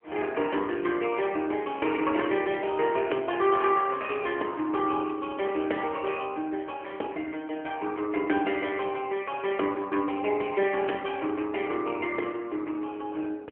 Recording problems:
phone line; 260 Hz to 3.5 kHz, AMR-NB

